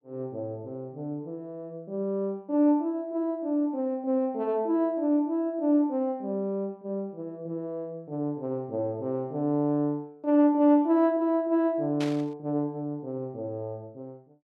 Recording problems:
burst of static; at 12 s; peak -6 dB vs average level

